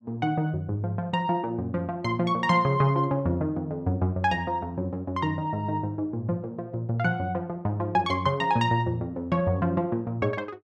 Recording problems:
none

